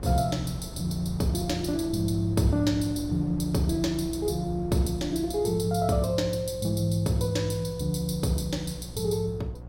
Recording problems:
mains hum; 60 Hz, harmonics up to 900 Hz, SNR 15 dB
wind on the microphone; below 340 Hz, SNR 17 dB

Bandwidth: 16 kHz